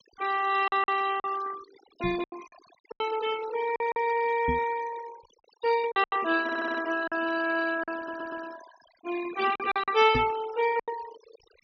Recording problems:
treble cut off; nothing above 6.4 kHz
noise reduction artefacts; signal-to-artefact ratio 14 dB
packet loss; 8% of the sound replaced, filled with silence
microphone thump; at 2 s, at 4.5 s and at 10 s; peak -1 dB vs average level
audio stuttering; at 6.5 s and at 8 s

